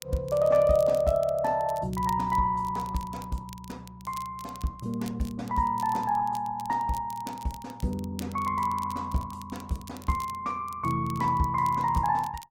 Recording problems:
lossy codec; Opus, log-spectral distance 2 dB, nothing above 16.1 kHz
crackle; vinyl, SNR 21 dB

